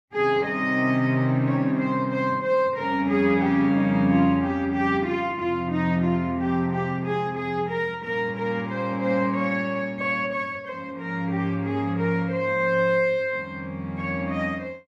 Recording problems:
none

